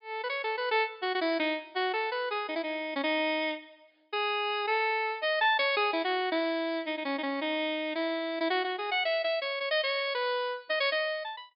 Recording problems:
low-pass filter; nothing above 4.9 kHz

